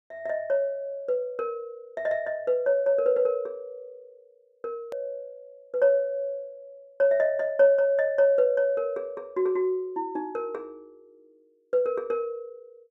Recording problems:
edit click; at 5 s

